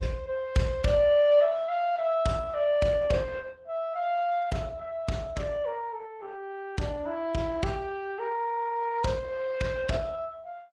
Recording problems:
lossy codec; MP3, then Opus, log-spectral distance 2 dB, nothing above 9.8 kHz

